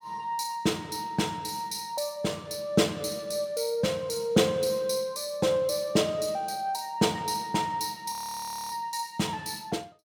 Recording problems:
frozen audio; at 8 s for 0.5 s

